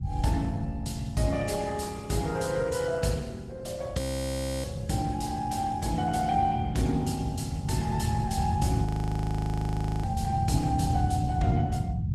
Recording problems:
codec artefacts; Opus, log-spectral distance 3 dB, nothing above 13.5 kHz
low-frequency rumble; below 150 Hz, SNR 1 dB
audio freezing; at 4 s for 0.5 s and at 9 s for 1 s

